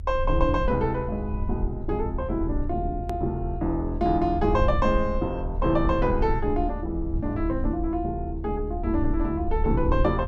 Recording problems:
rumble; below 74 Hz, SNR 5 dB
edit click; at 3 s

